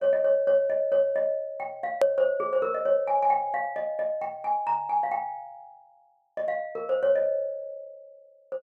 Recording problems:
click at an edit; at 2 s

